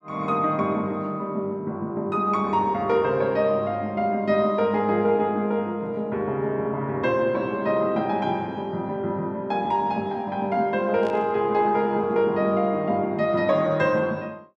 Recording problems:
static burst; at 11 s; peak -14 dB vs average level

